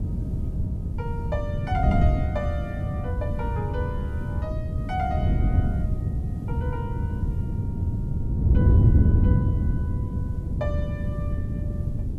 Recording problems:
hiss; slope -1 dB per octave, SNR 29 dB
wind on the microphone; below 140 Hz, SNR -10 dB

